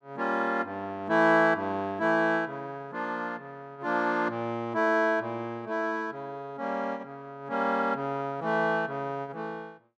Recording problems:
none

